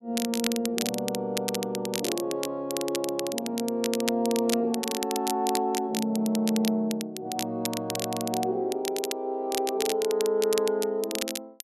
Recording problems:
crackle; vinyl, SNR 6 dB

